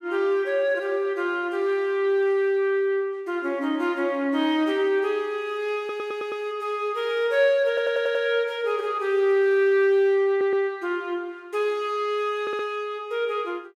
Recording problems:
audio stuttering; 4 times, first at 6 s

